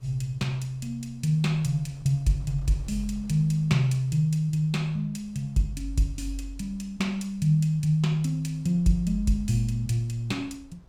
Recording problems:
wind noise; below 130 Hz, SNR 26 dB

